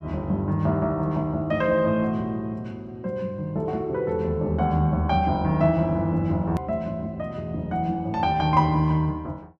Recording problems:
click at an edit; at 6.5 s

